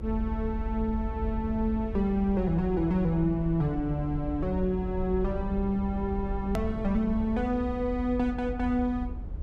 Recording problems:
rumble; below 78 Hz, SNR 7 dB
hard cut with a click; at 6.5 s

